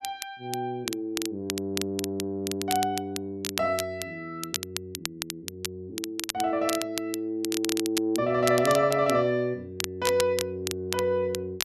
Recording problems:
crackle; vinyl, SNR 7 dB

